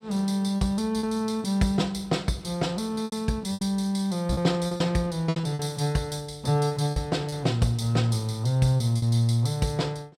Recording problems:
lost packets; 8% of the sound replaced, filled with repeated pitch periods

